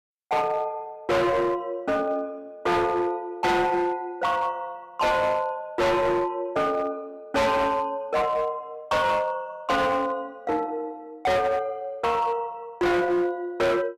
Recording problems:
distortion; hard clipping, signal-to-distortion ratio 6 dB

